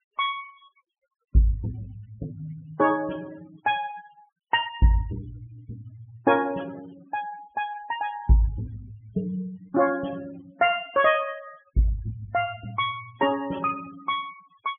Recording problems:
low-pass filter; nothing above 3.4 kHz
noise reduction artefacts; signal-to-artefact ratio 21 dB

